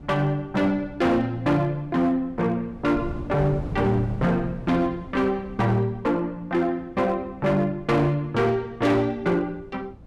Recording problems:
distortion; hard clipping, signal-to-distortion ratio 11 dB
wind on the microphone; below 230 Hz, SNR 16 dB

